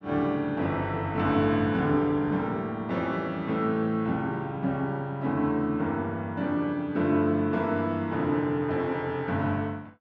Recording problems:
none

